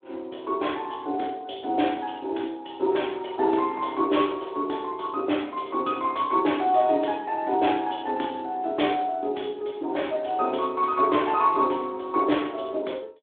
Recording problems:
phone line; 240 Hz to 3.6 kHz, Speex

